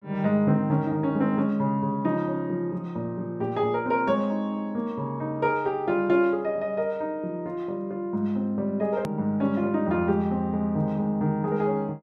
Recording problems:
click at an edit; at 9 s

